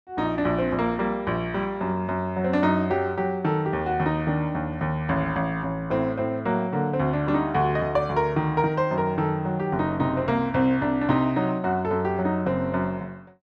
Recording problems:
none

